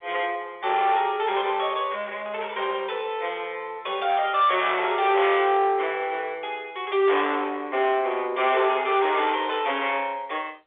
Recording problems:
telephone audio; 320 Hz to 3.7 kHz, G.711
distorted audio; soft clipping, signal-to-distortion ratio 9 dB

